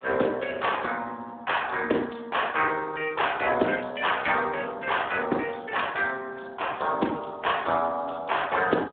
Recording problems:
phone line; 190 Hz to 3.5 kHz, Speex

